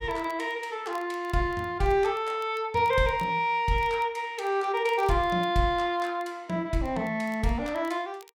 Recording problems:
crackle; vinyl, SNR 29 dB

